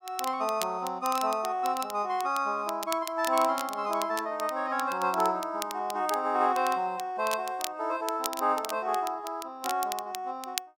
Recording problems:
crackle; vinyl, SNR 11 dB

